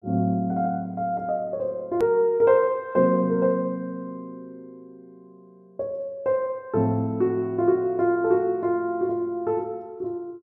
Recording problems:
edit click; at 2 s

